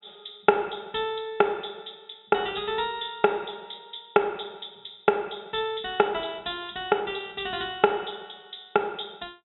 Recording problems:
low-pass filter; nothing above 3.8 kHz

